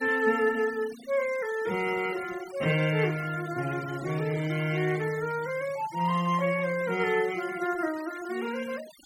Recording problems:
noise reduction artefacts; signal-to-artefact ratio 17 dB

